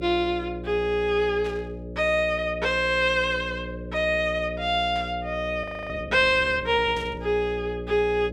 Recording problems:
electrical hum; 60 Hz, harmonics up to 600 Hz, SNR 12 dB
burst of static; at 1.5 s, at 5 s and at 7 s; peak -14 dB vs average level
audio freezing; at 5.5 s

